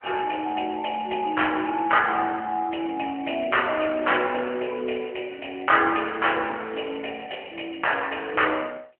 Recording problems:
phone line; 260 Hz to 3.1 kHz, AMR-NB

